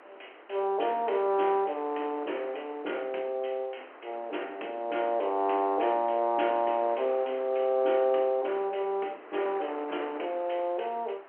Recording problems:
telephone audio; 280 Hz to 3.1 kHz, G.711
wind noise; below 1.5 kHz, SNR 19 dB

